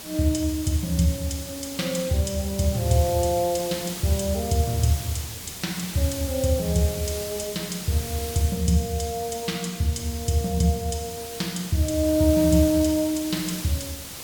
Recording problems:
hiss; SNR 10 dB

